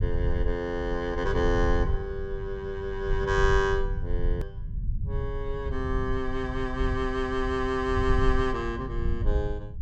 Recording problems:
rumble; below 76 Hz, SNR 3 dB
hard cut with a click; at 4.5 s

